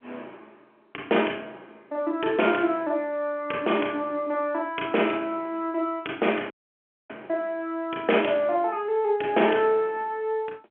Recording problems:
phone line; 280 Hz to 3.3 kHz, G.711
dropout; at 6.5 s for 0.5 s

